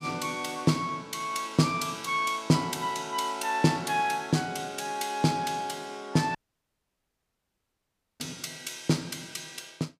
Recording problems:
dropout; at 6.5 s for 2 s

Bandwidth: 15 kHz